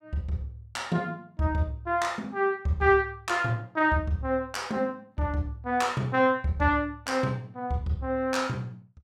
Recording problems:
none

